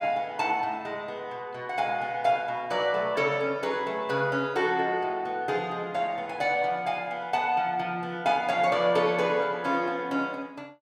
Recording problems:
none

